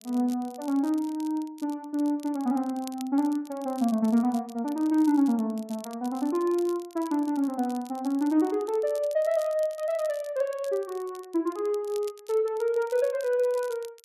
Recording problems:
crackle; vinyl, SNR 22 dB

